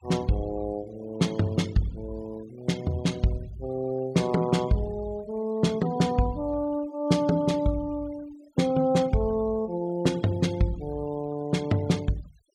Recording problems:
noise reduction artefacts; signal-to-artefact ratio 23 dB

